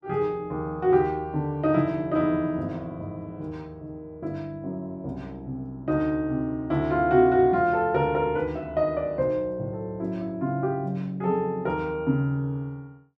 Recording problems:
none

